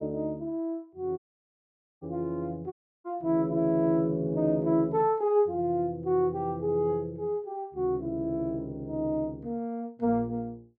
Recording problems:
audio cutting out; at 1 s for 1 s and at 2.5 s

